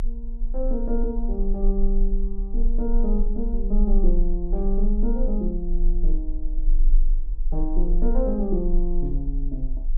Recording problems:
rumble; below 30 Hz, strongest tone 24 Hz, SNR -2 dB

